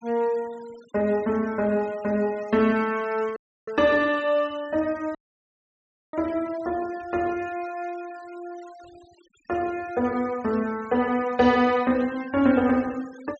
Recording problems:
low-pass filter; nothing above 8 kHz
denoising artefacts; signal-to-artefact ratio 24 dB
dropout; at 3.5 s and at 5 s for 1 s

